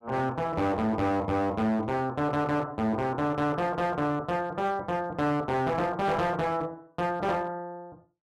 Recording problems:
distorted audio; hard clipping, uneven, signal-to-distortion ratio 10 dB

